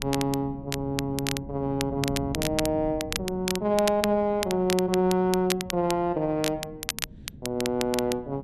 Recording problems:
wind on the microphone; below 230 Hz, SNR 15 dB
crackling; vinyl, SNR 7 dB

